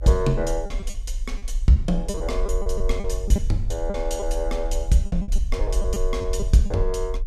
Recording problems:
rumble; below 46 Hz, strongest tone 28 Hz, SNR 4 dB
packet loss; 11% of the sound replaced, filled with repeated pitch periods

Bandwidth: 15 kHz